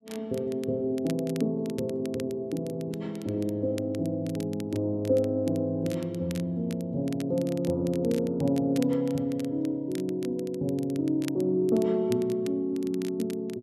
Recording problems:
crackling; vinyl, SNR 20 dB

